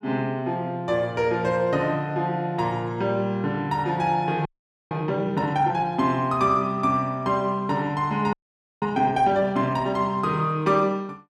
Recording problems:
audio freezing; at 4.5 s and at 8.5 s

